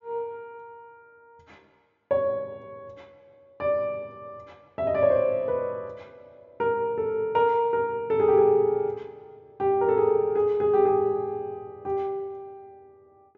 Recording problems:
treble cut off; nothing above 7.3 kHz

